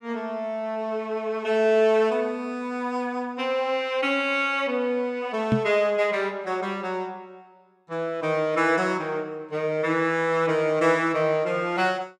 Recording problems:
knock on the microphone; at 5.5 s; peak +5 dB vs average level

